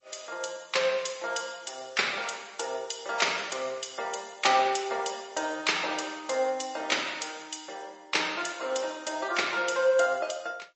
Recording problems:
codec artefacts; G.722, then MP3, log-spectral distance 6 dB, nothing above 7.8 kHz

